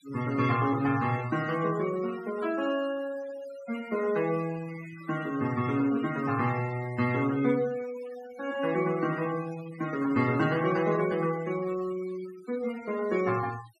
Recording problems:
denoising artefacts; signal-to-artefact ratio 15 dB

